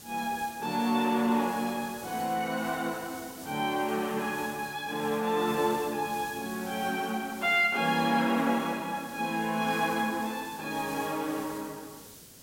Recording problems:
hiss; SNR 16 dB

